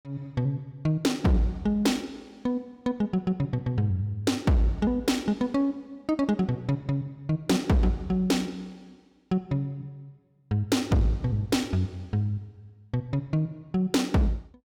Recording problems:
distortion; hard clipping, signal-to-distortion ratio 11 dB

